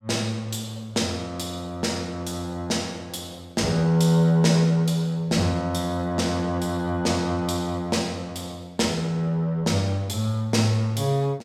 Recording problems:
none

